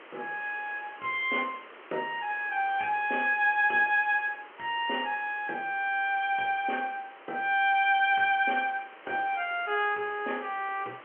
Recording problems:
phone line; 300 Hz to 3.3 kHz, G.711
background hiss; SNR 21 dB

